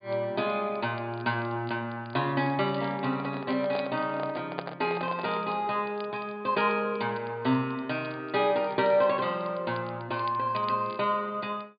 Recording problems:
low-pass filter; nothing above 4.9 kHz
crackling; vinyl, SNR 25 dB
microphone handling noise; from 3 to 5.5 s; peak 0 dB vs average level

